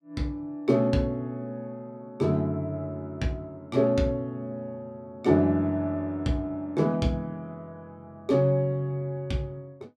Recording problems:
none

